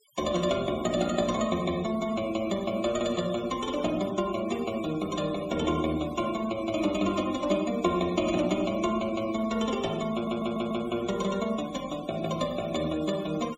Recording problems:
denoising artefacts; signal-to-artefact ratio 19 dB
audio stuttering; at 10 s

